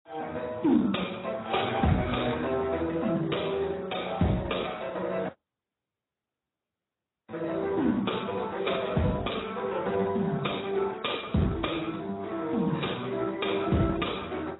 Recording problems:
lossy compression; Speex, then AAC, log-spectral distance 8 dB, nothing above 3.8 kHz
dropout; at 5.5 s for 2 s

